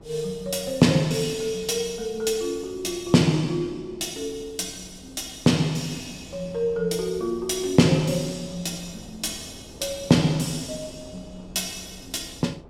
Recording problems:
wind on the microphone; below 440 Hz, SNR 21 dB

